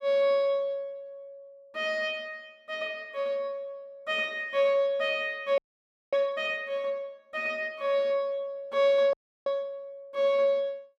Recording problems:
frozen audio; at 5.5 s for 0.5 s and at 9 s

